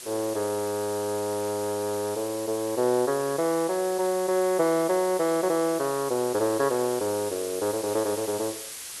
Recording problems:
background hiss; slope +2 dB per octave, SNR 11 dB

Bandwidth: 12 kHz